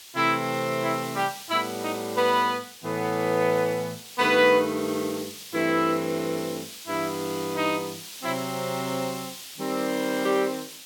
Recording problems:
background hiss; SNR 13 dB

